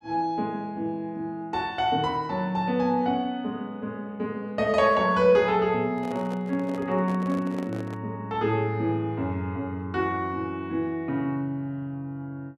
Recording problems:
handling noise; from 6 to 8 s; peak -8 dB vs average level

